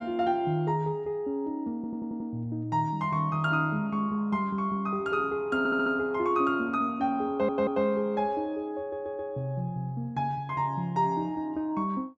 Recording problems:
audio stuttering; 4 times, first at 2 s

